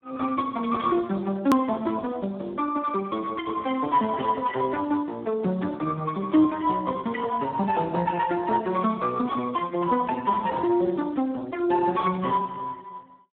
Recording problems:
phone line; 170 Hz to 2.1 kHz, Speex
hard cut with a click; at 1.5 s

